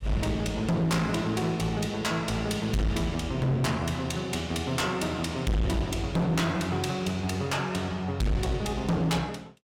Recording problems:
distorted audio; hard clipping, uneven, signal-to-distortion ratio 6 dB

